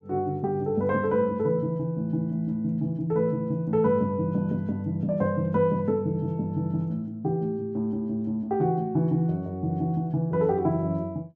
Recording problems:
none

